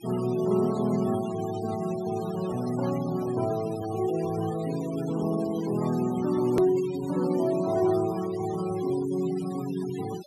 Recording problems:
denoising artefacts; signal-to-artefact ratio 17 dB
click at an edit; at 6.5 s

